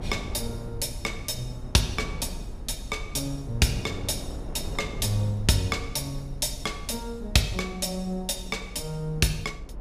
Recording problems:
low-frequency rumble; below 76 Hz, SNR 13 dB
wind on the microphone; below 370 Hz, SNR 14 dB

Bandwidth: 14.5 kHz